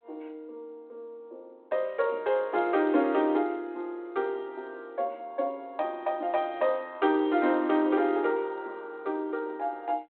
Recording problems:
telephone audio; 260 Hz to 3.8 kHz, G.726

